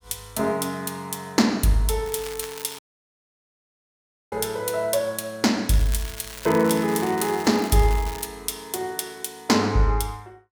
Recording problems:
crackling; at 2 s and from 5.5 to 8.5 s; loose cable, SNR 14 dB
audio cutting out; at 3 s for 1.5 s

